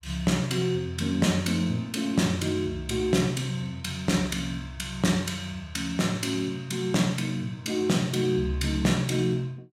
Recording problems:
none

